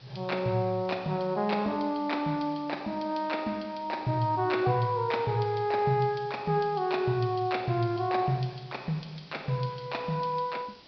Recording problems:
treble cut off; nothing above 5.5 kHz
background hiss; SNR 24 dB

